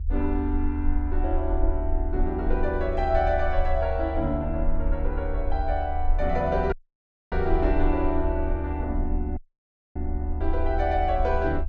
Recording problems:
rumble; below 72 Hz, SNR 2 dB
dropout; at 6.5 s for 0.5 s and at 9.5 s for 0.5 s

